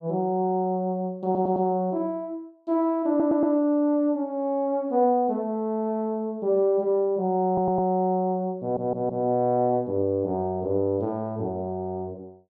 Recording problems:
stutter; 4 times, first at 1.5 s

